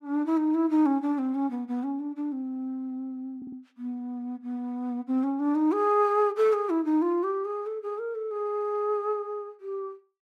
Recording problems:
stutter; at 3.5 s

